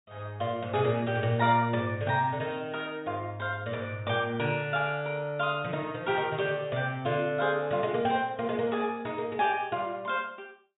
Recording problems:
treble cut off; nothing above 4 kHz

